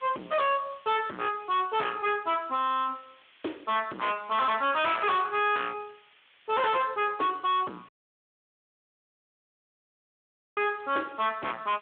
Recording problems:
telephone audio; 220 Hz to 4 kHz, Speex
distortion; soft clipping, signal-to-distortion ratio 6 dB
background hiss; SNR 28 dB
dropout; at 8 s for 2.5 s

